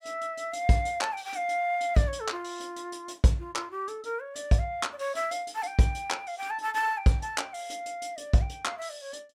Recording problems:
none

